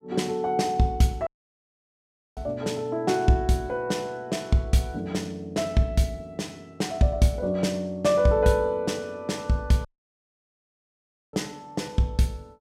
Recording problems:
audio cutting out; at 1.5 s for 1 s and at 10 s for 1.5 s

